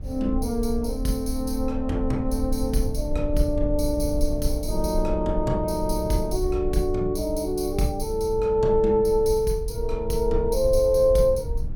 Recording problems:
rumble; below 62 Hz, SNR 8 dB

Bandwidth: 18 kHz